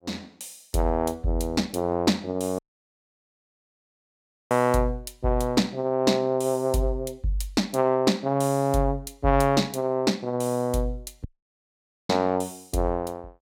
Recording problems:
audio cutting out; at 2.5 s for 2 s and at 11 s for 1 s

